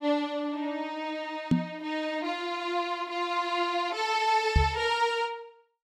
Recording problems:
microphone bump; at 1.5 s and at 4.5 s; peak +9 dB vs average level

